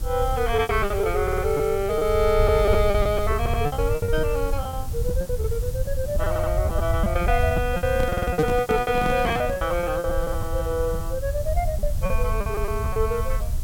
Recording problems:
background hiss; SNR 16 dB
rumble; below 88 Hz, SNR 4 dB
packet loss; 14% of the sound replaced, filled with repeated pitch periods
stutter; 4 times, first at 1 s
microphone handling noise; from 8 to 9.5 s; peak +4 dB vs average level

